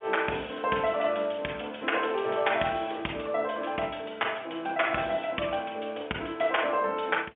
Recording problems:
phone line; 220 Hz to 3.4 kHz, G.711

